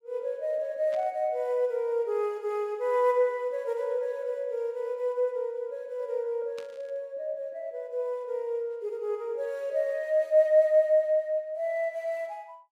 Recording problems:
static burst; at 1 s and at 6.5 s; peak -13 dB vs average level

